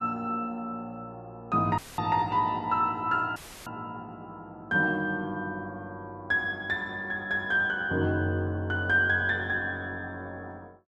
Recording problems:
audio cutting out; at 2 s and at 3.5 s; filled with static

